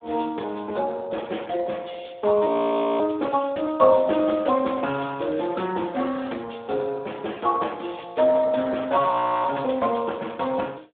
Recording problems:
phone line; 220 Hz to 3.5 kHz, Speex
crackle; at 2 s and from 4.5 to 5.5 s; loose cable, SNR 25 dB
audio freezing; at 2.5 s for 0.5 s and at 9 s

